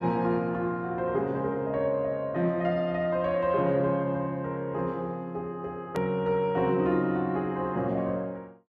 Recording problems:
hard cut with a click; at 6 s

